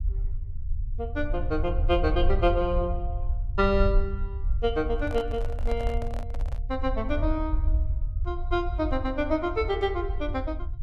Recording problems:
low-frequency rumble; below 64 Hz, SNR 2 dB
handling noise; from 5 to 6.5 s; peak -7 dB vs average level

